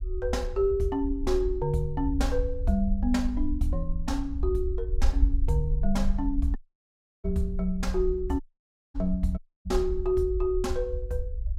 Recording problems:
low-frequency rumble; below 58 Hz, SNR 3 dB
dropout; at 6.5 s for 0.5 s, at 8.5 s for 0.5 s and at 9.5 s

